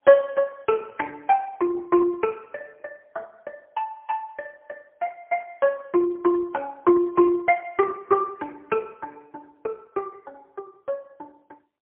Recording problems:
telephone audio; 300 Hz to 2.5 kHz, AMR-NB, then MP3

